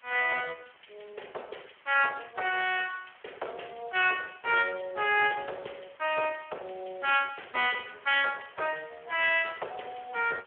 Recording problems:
telephone audio; 340 Hz to 3.3 kHz, Speex
background hiss; SNR 28 dB

